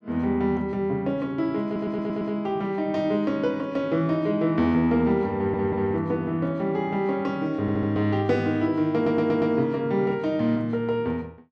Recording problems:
audio stuttering; 4 times, first at 1.5 s

